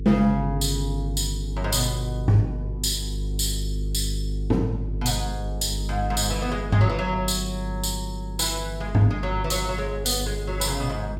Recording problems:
electrical hum; 50 Hz, harmonics up to 450 Hz, SNR 5 dB

